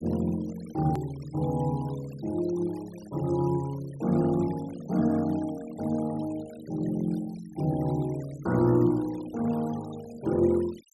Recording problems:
denoising artefacts; signal-to-artefact ratio 21 dB
click at an edit; at 1 s

